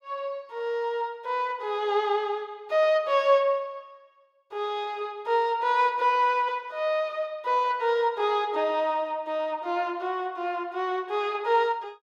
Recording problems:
none

